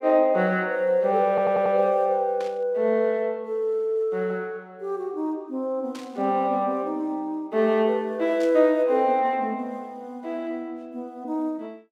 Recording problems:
stutter; at 1.5 s
static burst; at 2.5 s, at 6 s and at 8.5 s; peak -14 dB vs average level

